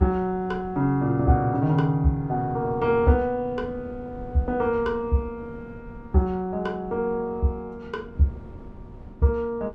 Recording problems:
wind noise; below 240 Hz, SNR 19 dB

